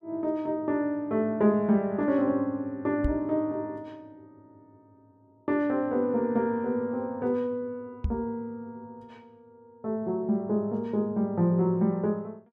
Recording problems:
microphone thump; at 3 s and at 8 s; peak +2 dB vs average level

